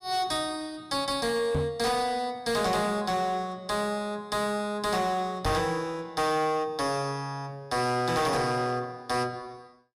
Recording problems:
distortion; hard clipping, uneven, signal-to-distortion ratio 11 dB
knock on the microphone; at 1.5 s and at 5.5 s; peak +3 dB vs average level

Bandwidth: 15 kHz